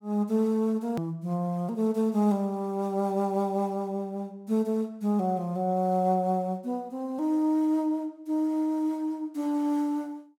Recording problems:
click at an edit; at 1 s

